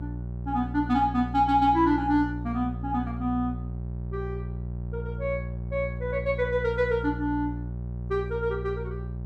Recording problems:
hum; 60 Hz, harmonics up to 600 Hz, SNR 7 dB

